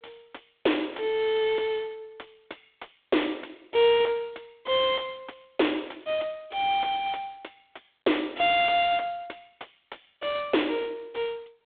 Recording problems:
telephone audio; 260 Hz to 3.6 kHz, G.726
distortion; soft clipping, signal-to-distortion ratio 6 dB

